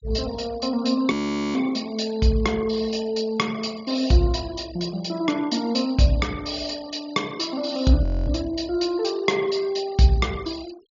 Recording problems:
treble missing; nothing above 7 kHz
denoising artefacts; signal-to-artefact ratio 22 dB
audio freezing; at 1 s and at 8 s

